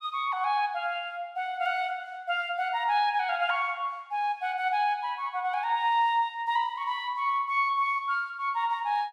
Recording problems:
none

